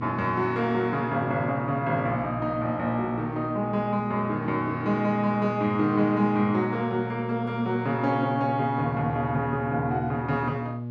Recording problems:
hum; 60 Hz, harmonics up to 840 Hz, SNR 8 dB

